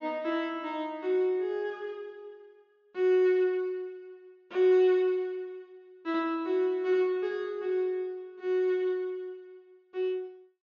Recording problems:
low-pass filter; nothing above 6.7 kHz

